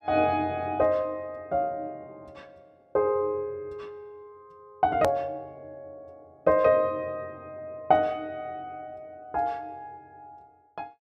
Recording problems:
click at an edit; at 5 s

